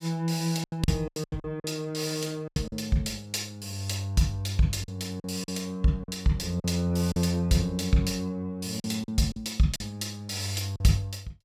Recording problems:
packet loss; 8% of the sound replaced, filled with silence

